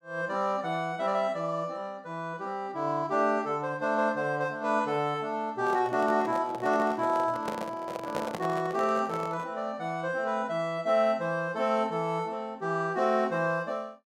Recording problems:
handling noise; from 5.5 to 9.5 s; peak -1 dB vs average level

